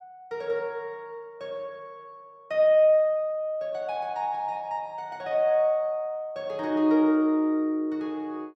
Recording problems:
none

